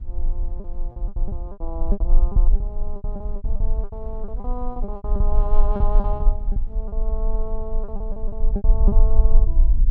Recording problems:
rumble; below 40 Hz, strongest tone 20 Hz, SNR -11 dB
wind on the microphone; below 220 Hz, SNR 14 dB
packet loss; 16% of the sound replaced, filled with repeated pitch periods

